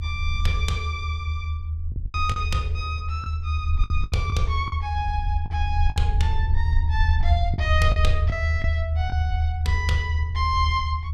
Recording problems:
low-frequency rumble; below 80 Hz, strongest tone 78 Hz, SNR -4 dB
lost packets; 5% of the sound replaced, filled with the last packet

